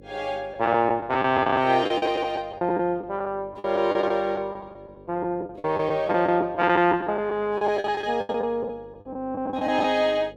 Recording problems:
hum; 50 Hz, harmonics up to 600 Hz, SNR 24 dB
lost packets; 13% of the sound replaced, filled with the last packet

